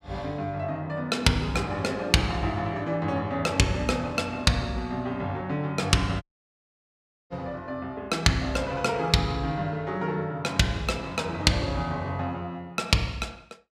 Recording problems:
audio cutting out; at 6 s for 1 s

